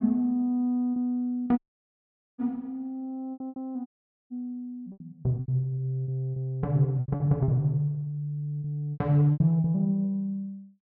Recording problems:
lost packets; 10% of the sound replaced, filled with repeated pitch periods
audio cutting out; at 1.5 s for 1 s and at 4 s

